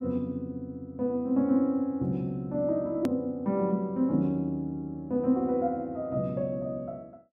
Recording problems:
click at an edit; at 3 s

